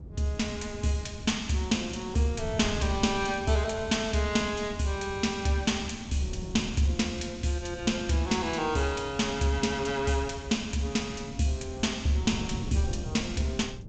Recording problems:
lossy compression; G.722, log-spectral distance 3 dB, nothing above 7.6 kHz
wind on the microphone; below 150 Hz, SNR 13 dB

